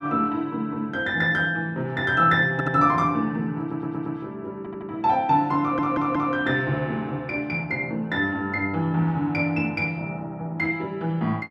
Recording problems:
stutter; 4 times, first at 2.5 s

